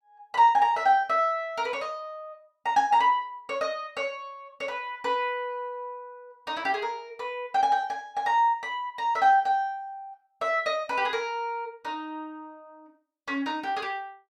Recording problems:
none

